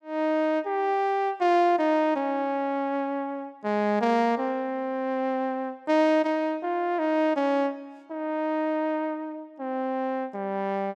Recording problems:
none

